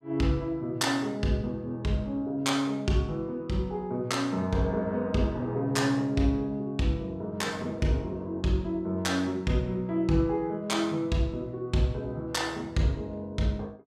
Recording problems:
none

